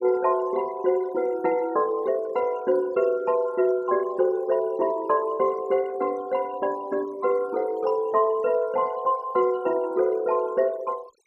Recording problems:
noise reduction artefacts; signal-to-artefact ratio 23 dB

